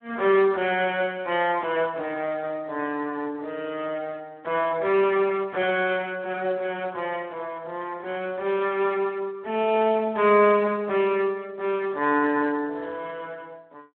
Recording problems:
telephone audio; 240 Hz to 3.5 kHz, Speex

